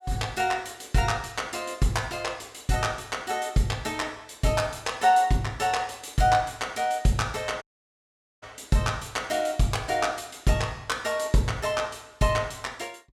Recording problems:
audio cutting out; at 7.5 s for 1 s

